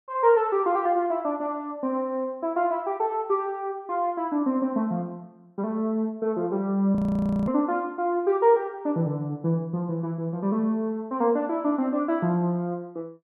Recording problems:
audio freezing; at 7 s for 0.5 s

